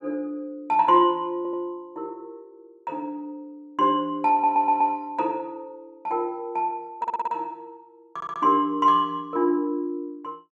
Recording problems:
audio stuttering; 4 times, first at 1.5 s

